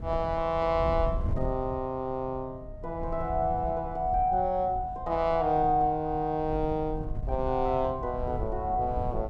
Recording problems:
wind on the microphone; below 98 Hz, SNR 10 dB

